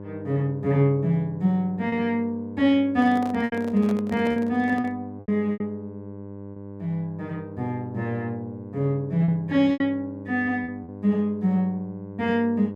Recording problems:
hum; 50 Hz, harmonics up to 1.1 kHz, SNR 14 dB
lost packets; 5% of the sound replaced, filled with repeated pitch periods
handling noise; from 3 to 5 s; peak -7 dB vs average level

